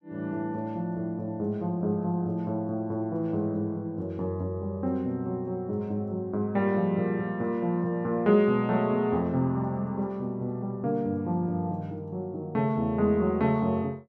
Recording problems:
none

